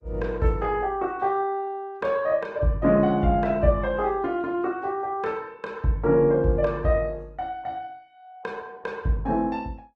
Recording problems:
lossy codec; Opus, log-spectral distance 2 dB

